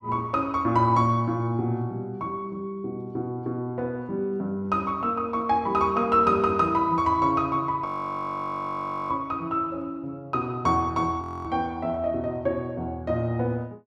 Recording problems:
frozen audio; at 8 s for 1.5 s and at 11 s

